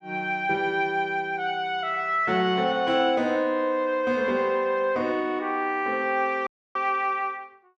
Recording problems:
dropout; at 6.5 s

